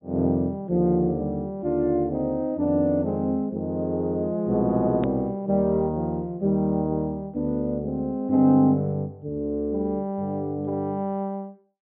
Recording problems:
low-pass filter; nothing above 4 kHz
hard cut with a click; at 5 s

